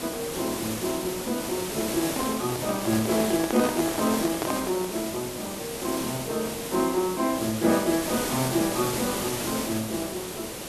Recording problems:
background hiss; slope -4 dB per octave, SNR 3 dB
microphone handling noise; from 2 to 5 s; peak +1 dB vs average level

